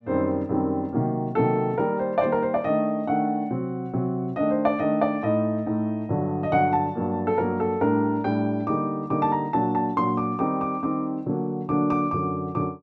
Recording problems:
none

